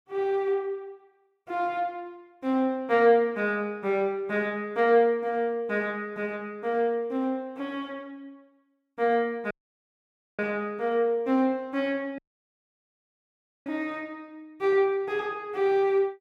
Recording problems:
dropout; at 9.5 s for 1 s and at 12 s for 1.5 s

